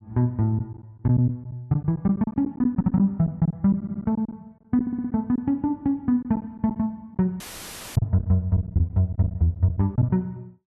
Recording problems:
lost packets; 9% of the sound replaced, filled with silence
audio stuttering; at 2.5 s, at 4 s and at 5 s
audio cutting out; at 7.5 s for 0.5 s; filled with static

